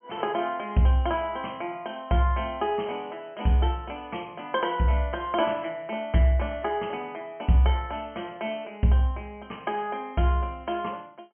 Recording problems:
treble cut off; nothing above 3.2 kHz

